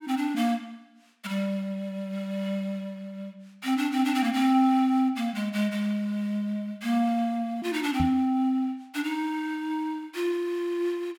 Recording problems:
knock on the microphone; at 8 s; peak +2 dB vs average level

